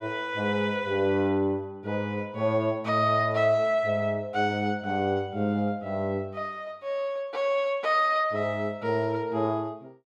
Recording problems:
none

